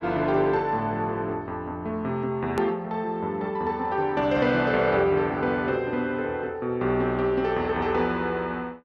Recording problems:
hard cut with a click; at 2.5 s

